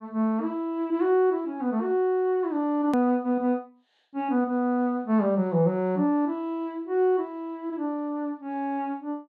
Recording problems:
hard cut with a click; at 3 s

